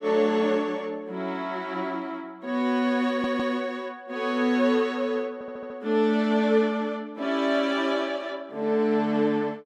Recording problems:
stutter; at 3 s and at 5.5 s

